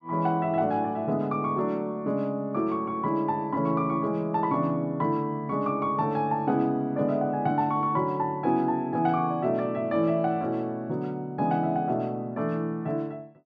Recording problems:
none

